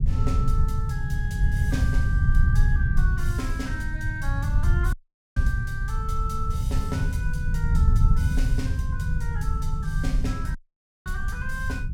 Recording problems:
low-frequency rumble; below 92 Hz, SNR -8 dB
audio cutting out; at 5 s and at 11 s for 0.5 s

